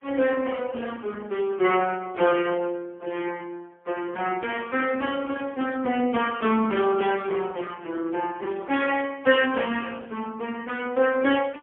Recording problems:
telephone audio; 220 Hz to 3.3 kHz, AMR-NB, then MP3

